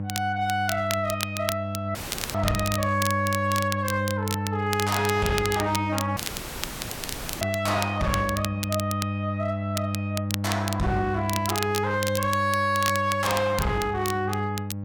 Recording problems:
distortion; hard clipping, uneven, signal-to-distortion ratio 10 dB
mains hum; 50 Hz, harmonics up to 800 Hz, SNR 4 dB
crackling; vinyl, SNR 7 dB
dropout; at 2 s and at 6 s for 1 s

